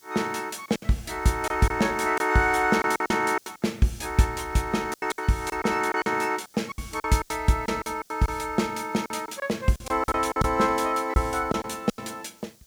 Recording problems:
hiss; SNR 29 dB
packet loss; 12% of the sound replaced, filled with silence

